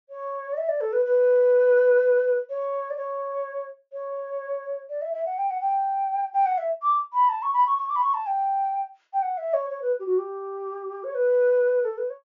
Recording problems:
treble cut off; nothing above 7 kHz

